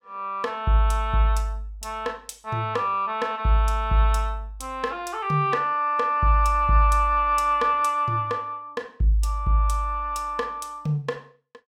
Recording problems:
none

